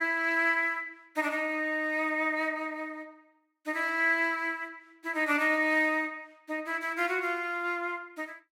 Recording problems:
none

